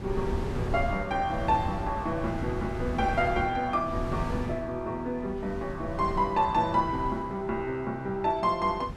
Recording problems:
wind on the microphone; below 210 Hz, SNR 8 dB

